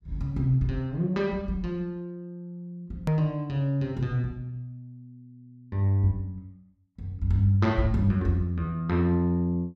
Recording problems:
hard cut with a click; at 3 s

